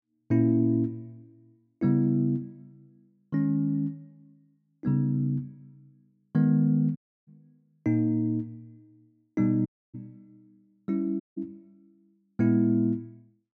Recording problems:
dropout; at 7 s, at 9.5 s and at 11 s

